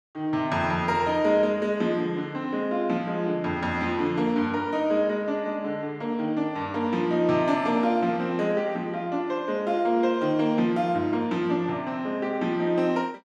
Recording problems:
none

